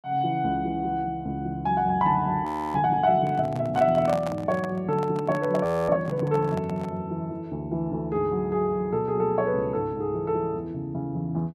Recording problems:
audio freezing; at 2.5 s and at 5.5 s
handling noise; from 3 to 7 s; peak -4 dB vs average level

